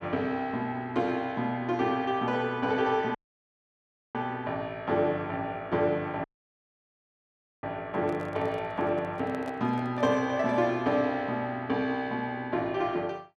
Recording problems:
dropout; at 3 s for 1 s and at 6 s for 1.5 s
handling noise; from 8 to 10 s; peak -8 dB vs average level

